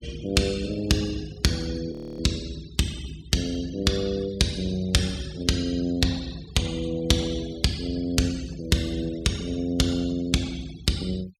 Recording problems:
denoising artefacts; signal-to-artefact ratio 19 dB
frozen audio; at 2 s

